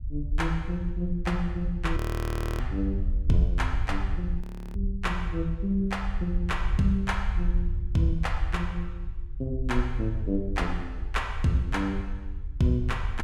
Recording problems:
rumble; below 68 Hz, SNR 3 dB
frozen audio; at 2 s for 0.5 s and at 4.5 s

